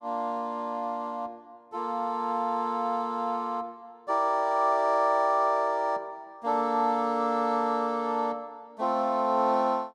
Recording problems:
none

